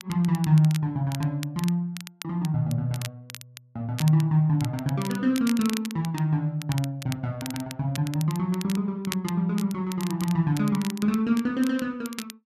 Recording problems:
crackling; vinyl, SNR 15 dB

